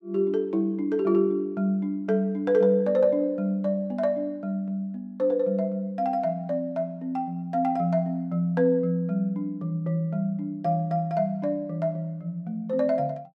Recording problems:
none

